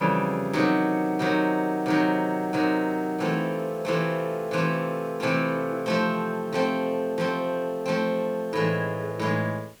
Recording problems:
background hiss; slope -2 dB per octave, SNR 26 dB

